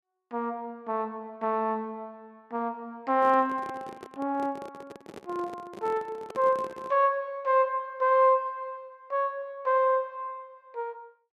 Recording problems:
handling noise; from 3 to 7 s; peak -9 dB vs average level

